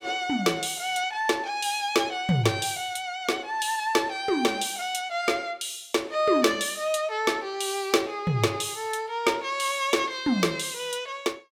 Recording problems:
none

